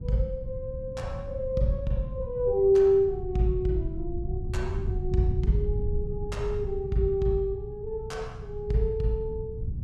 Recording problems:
rumble; below 110 Hz, SNR 7 dB

